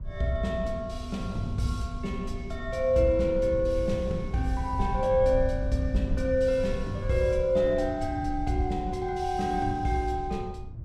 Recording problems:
wind noise; below 92 Hz, SNR 8 dB

